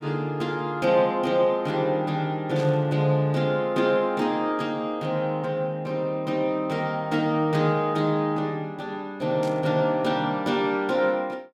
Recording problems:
static burst; at 2.5 s and at 9.5 s; peak -12 dB vs average level

